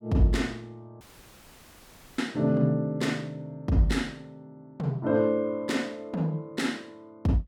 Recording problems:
dropout; at 1 s for 1 s

